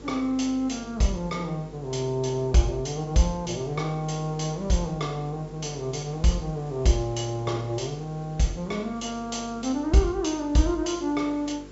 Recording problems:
treble missing; nothing above 8 kHz
hum; 50 Hz, harmonics up to 500 Hz, SNR 17 dB
hiss; SNR 27 dB

